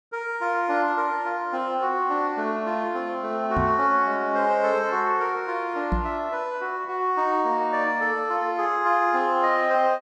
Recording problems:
microphone thump; at 3.5 s and at 6 s; peak +1 dB vs average level

